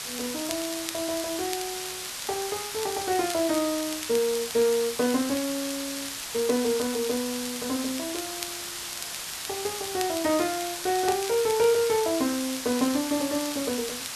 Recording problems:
background hiss; slope +2 dB per octave, SNR 5 dB
crackle; vinyl, SNR 13 dB

